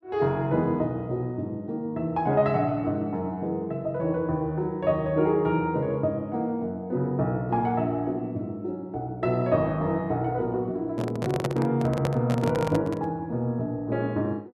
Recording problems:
handling noise; from 11 to 13 s; peak +2 dB vs average level

